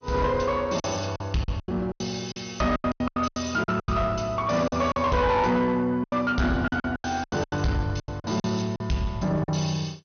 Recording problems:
codec artefacts; MP2, log-spectral distance 4 dB, nothing above 6.3 kHz
distortion; soft clipping, signal-to-distortion ratio 11 dB
packet loss; 15% of the sound replaced, filled with silence

